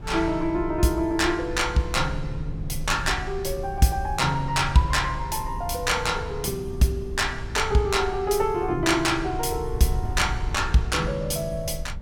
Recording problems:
wind noise; below 88 Hz, SNR 11 dB

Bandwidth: 17 kHz